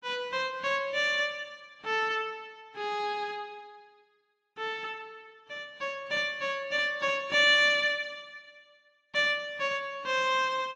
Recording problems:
lossy compression; AAC, log-spectral distance 2 dB, nothing above 10.1 kHz

